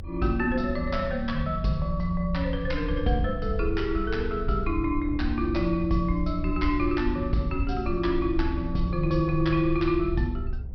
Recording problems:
low-pass filter; nothing above 5.5 kHz
rumble; below 72 Hz, SNR 7 dB
wind noise; below 190 Hz, SNR 16 dB

